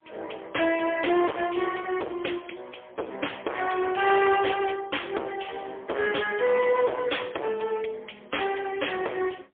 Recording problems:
phone line; 300 Hz to 3.4 kHz, AMR-NB, then MP3
distorted audio; hard clipping, signal-to-distortion ratio 7 dB

